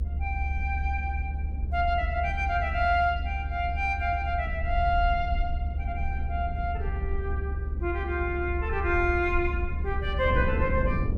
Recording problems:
rumble; below 72 Hz, strongest tone 70 Hz, SNR 3 dB
wind noise; below 200 Hz, SNR 10 dB

